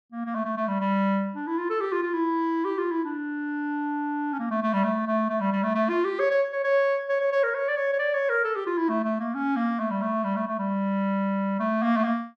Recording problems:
none

